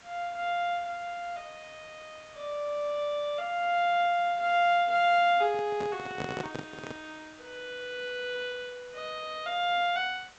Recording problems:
treble cut off; nothing above 8 kHz
hiss; slope -1 dB per octave, SNR 23 dB
handling noise; from 5.5 to 7 s; peak -2 dB vs average level

